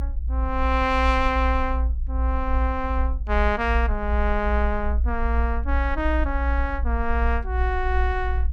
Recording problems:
low-frequency rumble; below 60 Hz, strongest tone 58 Hz, SNR 0 dB

